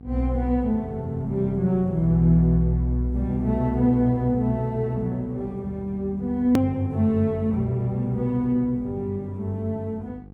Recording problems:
mains hum; 50 Hz, harmonics up to 850 Hz, SNR 21 dB
hard cut with a click; at 6.5 s

